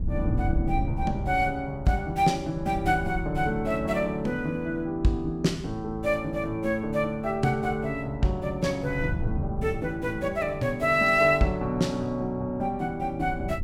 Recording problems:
wind on the microphone; below 120 Hz, SNR 10 dB

